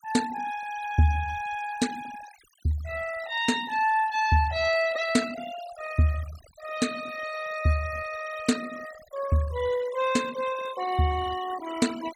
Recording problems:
noise reduction artefacts; signal-to-artefact ratio 14 dB

